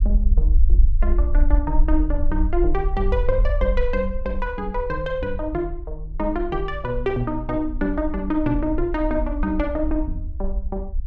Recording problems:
low-frequency rumble; below 50 Hz, SNR 0 dB

